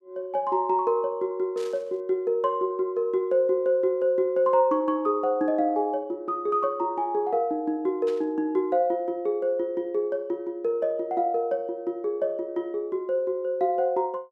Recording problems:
static burst; at 1.5 s and at 8 s; peak -15 dB vs average level

